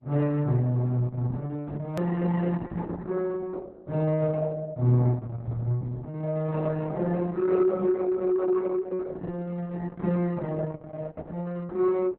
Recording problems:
lossy compression; Opus, log-spectral distance 3 dB, nothing above 13.3 kHz
click at an edit; at 2 s

